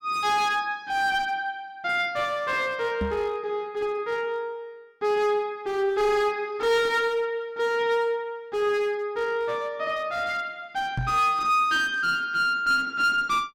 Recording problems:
distortion; hard clipping, uneven, signal-to-distortion ratio 10 dB
microphone bump; at 3 s and at 11 s; peak -1 dB vs average level

